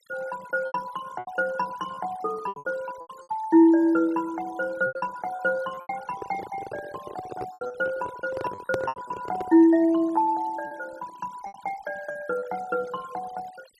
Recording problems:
denoising artefacts; signal-to-artefact ratio 22 dB
lost packets; 9% of the sound replaced, filled with repeated pitch periods
microphone handling noise; from 6 to 9.5 s; peak +1 dB vs average level

